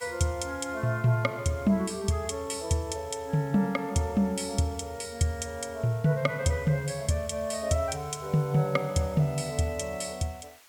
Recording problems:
hiss; slope +1 dB per octave, SNR 24 dB

